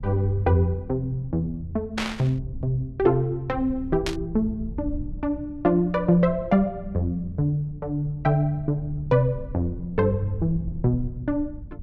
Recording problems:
rumble; below 94 Hz, SNR 14 dB
static burst; at 2 s and at 4 s; peak 0 dB vs average level

